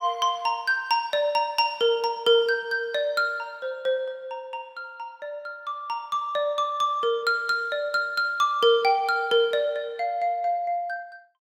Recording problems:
none

